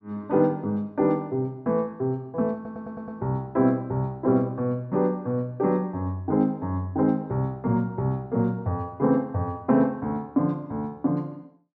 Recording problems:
audio stuttering; at 2.5 s

